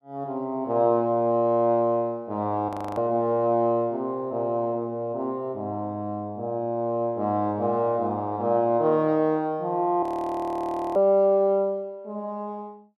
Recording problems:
frozen audio; at 2.5 s and at 10 s for 1 s

